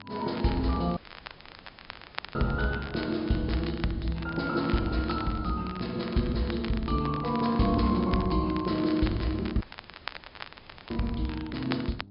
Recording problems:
treble cut off; nothing above 5.5 kHz
electrical hum; 50 Hz, harmonics up to 700 Hz, SNR 22 dB
crackle; vinyl, SNR 15 dB
audio cutting out; at 1 s for 1.5 s and at 9.5 s for 1.5 s

